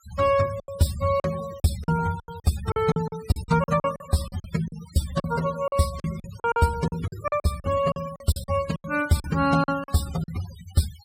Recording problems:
denoising artefacts; signal-to-artefact ratio 16 dB
packet loss; 15% of the sound replaced, filled with silence

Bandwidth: 16 kHz